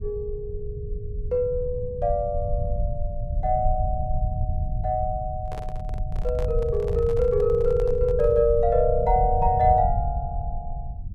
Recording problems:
low-frequency rumble; below 88 Hz, SNR 6 dB
microphone handling noise; from 5.5 to 8.5 s; peak -11 dB vs average level

